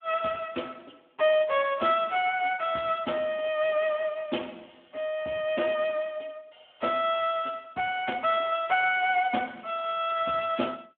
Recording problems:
phone line; 220 Hz to 3.4 kHz, Speex

